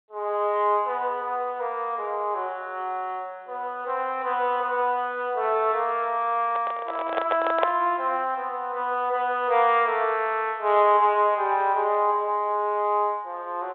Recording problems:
telephone audio; 320 Hz to 3.7 kHz, G.726
handling noise; from 6.5 to 8 s; peak +4 dB vs average level

